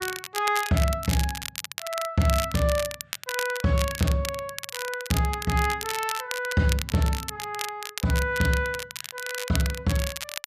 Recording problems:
crackling; vinyl, SNR 7 dB

